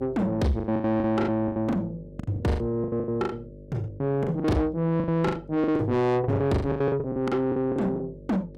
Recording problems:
distortion; soft clipping, signal-to-distortion ratio 8 dB
mains hum; 50 Hz, harmonics up to 600 Hz, SNR 20 dB
packet loss; 22% of the sound replaced, filled with the last packet

